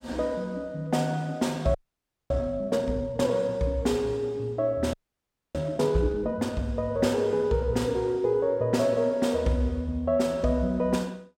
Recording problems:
audio freezing; at 2 s for 0.5 s and at 5 s for 0.5 s

